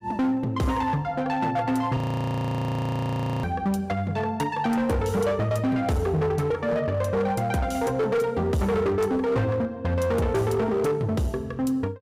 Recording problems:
distorted audio; hard clipping, signal-to-distortion ratio 10 dB
audio freezing; at 2 s for 1.5 s

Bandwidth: 15.5 kHz